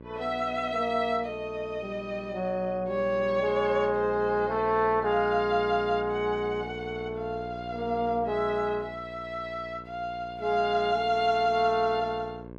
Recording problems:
electrical hum; 60 Hz, harmonics up to 1.6 kHz, SNR 15 dB

